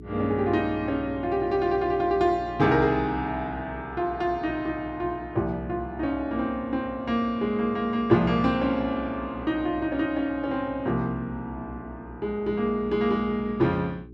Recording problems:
mains hum; 60 Hz, harmonics up to 420 Hz, SNR 17 dB

